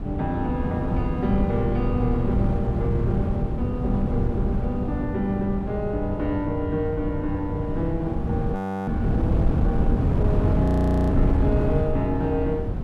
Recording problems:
wind on the microphone; below 190 Hz, SNR -2 dB
frozen audio; at 8.5 s and at 11 s

